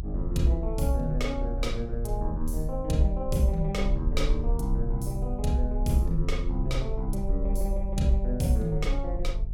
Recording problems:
hum; 50 Hz, harmonics up to 550 Hz, SNR 12 dB
low-frequency rumble; below 40 Hz, strongest tone 38 Hz, SNR 3 dB

